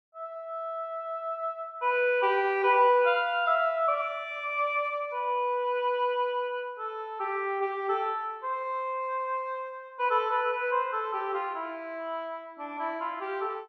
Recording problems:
none

